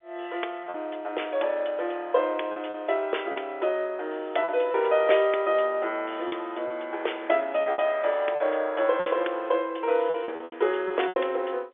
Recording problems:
telephone audio; 300 Hz to 3.6 kHz, G.711
lost packets; 7% of the sound replaced, filled with repeated pitch periods

